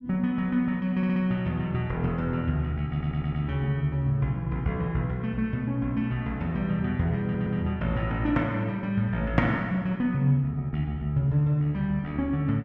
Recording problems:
audio stuttering; at 1 s, at 3 s and at 7 s

